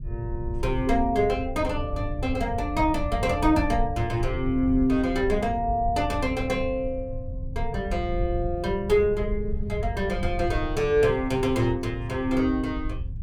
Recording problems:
low-frequency rumble; below 90 Hz, SNR 8 dB

